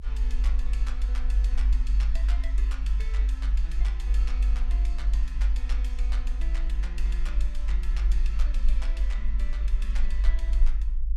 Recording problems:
low-frequency rumble; below 50 Hz, strongest tone 48 Hz, SNR -16 dB

